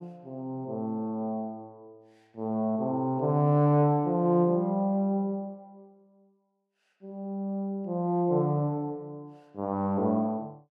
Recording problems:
none

